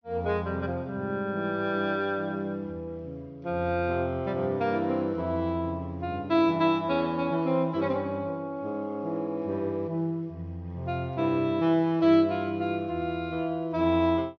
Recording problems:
low-pass filter; nothing above 6.3 kHz

